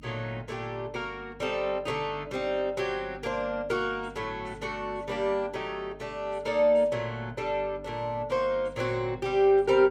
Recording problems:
hum; 50 Hz, harmonics up to 300 Hz, SNR 20 dB

